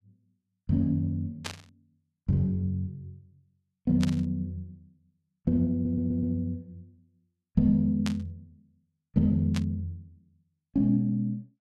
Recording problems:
burst of static; 4 times, first at 1.5 s; peak -2 dB vs average level
audio stuttering; at 5.5 s

